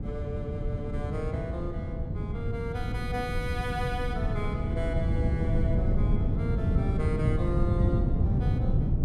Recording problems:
wind noise; below 160 Hz, SNR -7 dB

